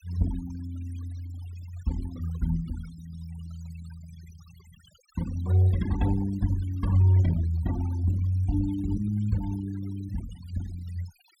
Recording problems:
noise reduction artefacts; signal-to-artefact ratio 19 dB

